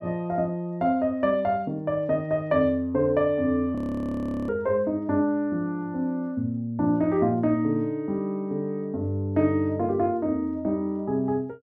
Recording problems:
frozen audio; at 4 s for 0.5 s

